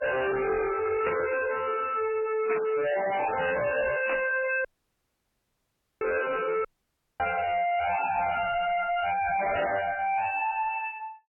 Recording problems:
lossy compression; MP3, log-spectral distance 5 dB, nothing above 2.7 kHz
distorted audio; hard clipping, uneven, signal-to-distortion ratio 6 dB
burst of static; 4 times, first at 1 s; peak -2 dB vs average level
audio cutting out; at 4.5 s for 1.5 s and at 6.5 s for 0.5 s

